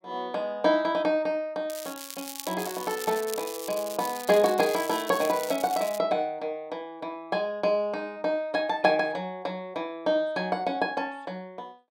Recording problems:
crackle; from 1.5 to 6 s; loose cable, SNR 11 dB

